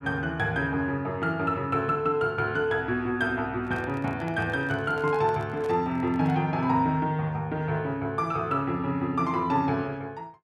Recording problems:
handling noise; from 3.5 to 6.5 s; peak -11 dB vs average level

